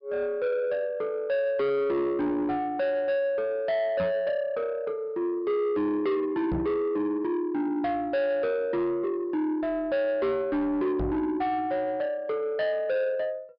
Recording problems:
low-pass filter; nothing above 5.5 kHz
distorted audio; soft clipping, signal-to-distortion ratio 11 dB
microphone thump; at 4 s, at 6.5 s and at 11 s; peak +1 dB vs average level

